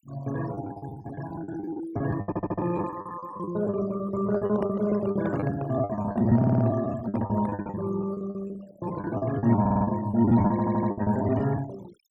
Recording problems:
denoising artefacts; signal-to-artefact ratio 17 dB
packet loss; 19% of the sound replaced, filled with the last packet
stutter; 4 times, first at 2.5 s
handling noise; from 4 to 7.5 s; peak -5 dB vs average level

